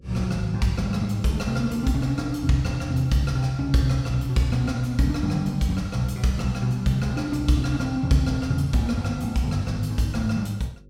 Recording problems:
electrical hum; 50 Hz, harmonics up to 550 Hz, SNR 27 dB

